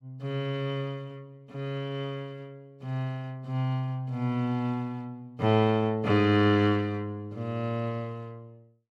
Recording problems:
none

